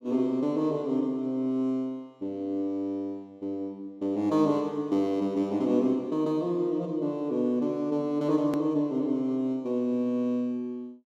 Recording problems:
edit click; at 8.5 s

